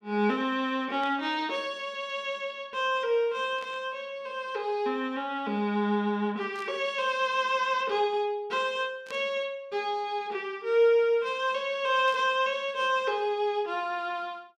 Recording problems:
burst of static; 5 times, first at 1 s; peak -12 dB vs average level

